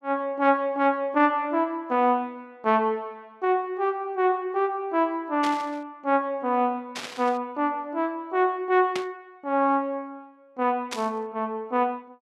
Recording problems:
burst of static; 4 times, first at 5.5 s; peak -2 dB vs average level

